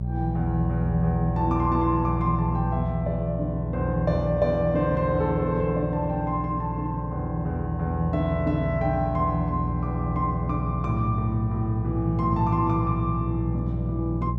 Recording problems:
electrical hum; 60 Hz, harmonics up to 600 Hz, SNR 3 dB

